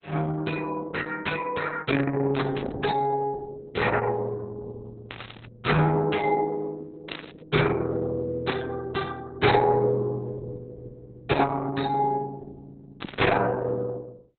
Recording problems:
lossy codec; Opus, log-spectral distance 5 dB, nothing above 4.1 kHz
burst of static; 5 times, first at 2.5 s; peak -1 dB vs average level

